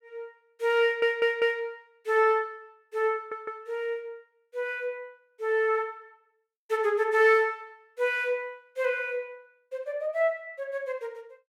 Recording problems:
stutter; at 1 s and at 3 s

